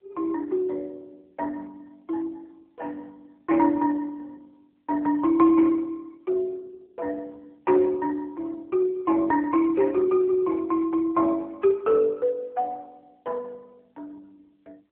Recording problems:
telephone audio; 320 Hz to 2.2 kHz, AMR-NB

